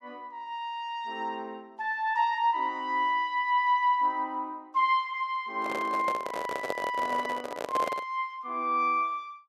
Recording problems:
microphone handling noise; from 5.5 to 8 s; peak +1 dB vs average level

